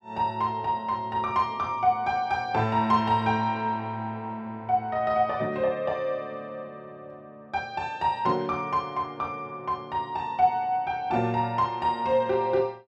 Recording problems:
none

